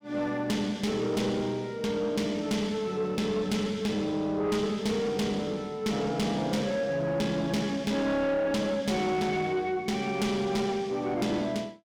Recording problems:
distortion; soft clipping, signal-to-distortion ratio 11 dB

